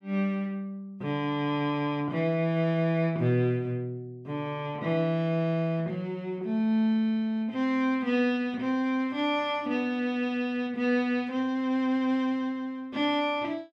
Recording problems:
none

